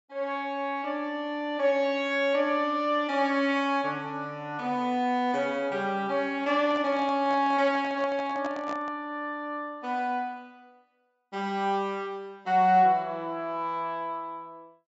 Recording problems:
treble cut off; nothing above 8 kHz
handling noise; from 6.5 to 9 s; peak -6 dB vs average level

